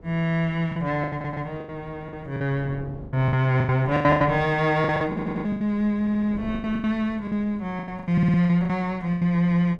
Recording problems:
wind on the microphone; below 320 Hz, SNR 20 dB
lost packets; 16% of the sound replaced, filled with the last packet
stutter; 4 times, first at 1 s

